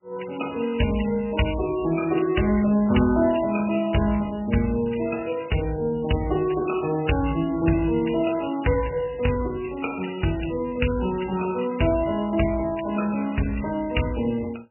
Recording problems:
lossy compression; MP3, log-spectral distance 7 dB, nothing above 2.9 kHz

